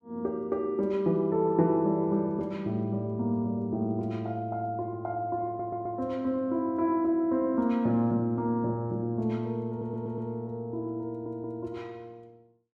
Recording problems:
audio stuttering; at 5.5 s, at 9.5 s and at 11 s

